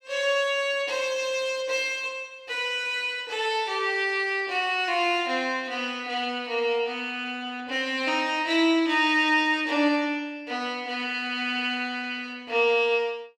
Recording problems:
none

